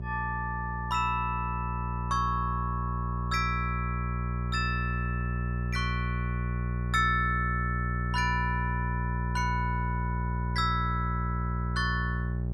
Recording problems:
hum; 60 Hz, harmonics up to 600 Hz, SNR 1 dB

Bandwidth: 13 kHz